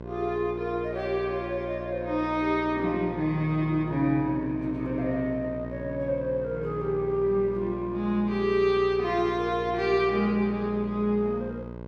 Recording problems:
electrical hum; 60 Hz, harmonics up to 1.6 kHz, SNR 12 dB

